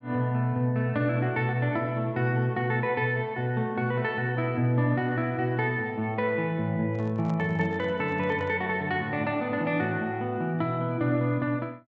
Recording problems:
treble cut off; nothing above 8 kHz
handling noise; from 7 to 8.5 s; peak -11 dB vs average level

